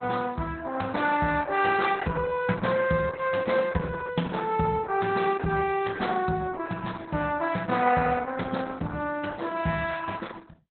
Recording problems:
lossy compression; Opus, log-spectral distance 4 dB, nothing above 4 kHz

